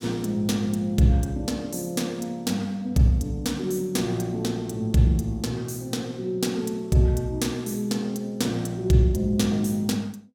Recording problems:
none

